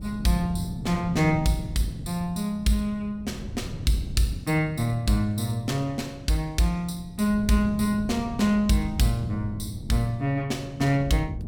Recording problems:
wind noise; below 180 Hz, SNR 11 dB

